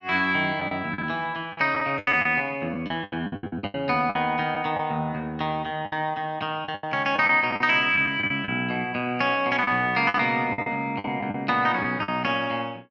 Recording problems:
packet loss; 11% of the sound replaced, filled with the last packet

